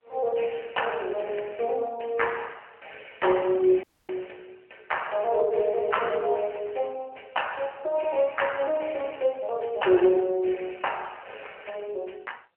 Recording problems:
phone line; 320 Hz to 3.2 kHz, AMR-NB
dropout; at 4 s

